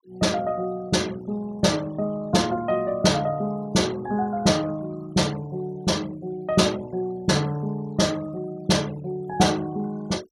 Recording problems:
denoising artefacts; signal-to-artefact ratio 23 dB

